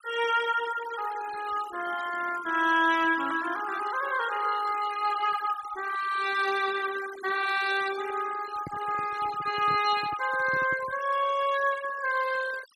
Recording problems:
denoising artefacts; signal-to-artefact ratio 14 dB
microphone handling noise; from 8.5 to 11 s; peak -8 dB vs average level

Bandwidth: 14 kHz